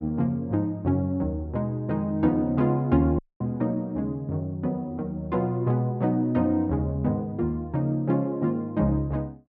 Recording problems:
audio cutting out; at 3 s

